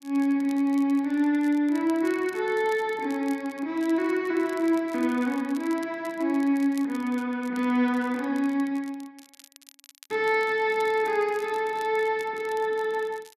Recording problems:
crackling; vinyl, SNR 25 dB

